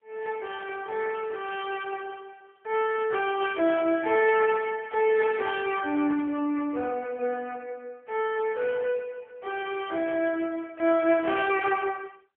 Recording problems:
telephone audio; 300 Hz to 3.1 kHz, AMR-NB

